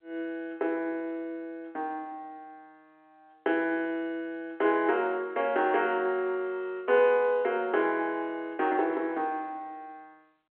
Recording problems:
telephone audio; 340 Hz to 3.4 kHz, G.711

